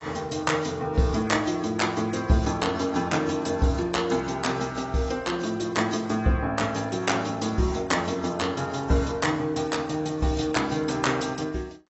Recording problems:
lossy codec; AAC, log-spectral distance 4 dB, nothing above 7.8 kHz

